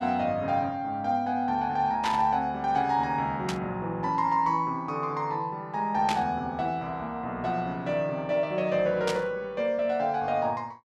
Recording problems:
burst of static; 4 times, first at 2 s; peak -1 dB vs average level

